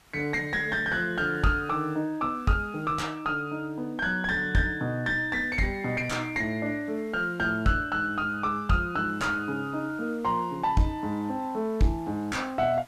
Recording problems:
distortion; soft clipping, signal-to-distortion ratio 9 dB
background hiss; slope -2 dB per octave, SNR 28 dB

